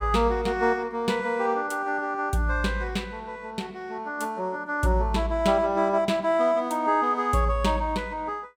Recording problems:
none

